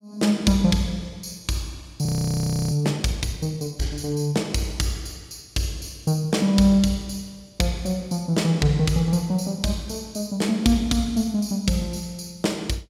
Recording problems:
audio freezing; at 2 s for 0.5 s

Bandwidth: 16 kHz